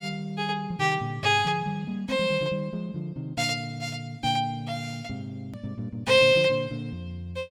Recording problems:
edit click; at 5.5 s

